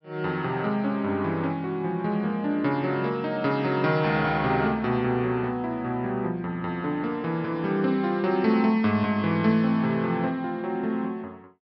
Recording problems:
low-pass filter; nothing above 5.6 kHz

